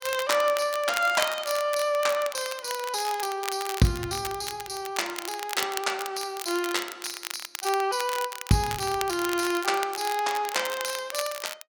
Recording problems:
crackle; vinyl, SNR 9 dB

